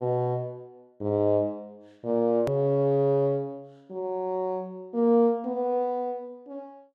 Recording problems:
click at an edit; at 2.5 s

